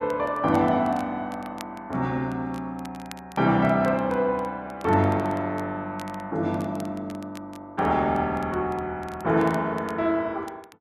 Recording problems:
crackle; vinyl, SNR 25 dB

